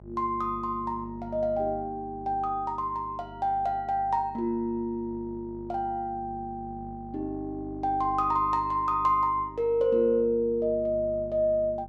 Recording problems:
electrical hum; 50 Hz, harmonics up to 850 Hz, SNR 18 dB

